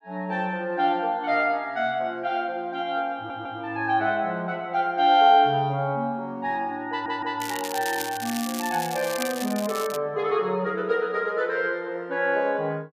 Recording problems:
audio stuttering; at 3 s and at 7 s
crackle; from 7.5 to 10 s; loose cable, SNR 10 dB

